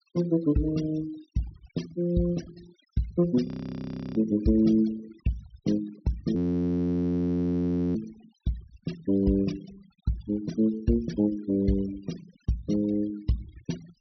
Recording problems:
treble cut off; nothing above 6 kHz
noise reduction artefacts; signal-to-artefact ratio 19 dB
frozen audio; at 3.5 s for 0.5 s and at 6.5 s for 1.5 s

